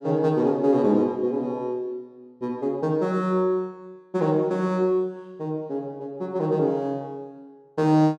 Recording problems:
none

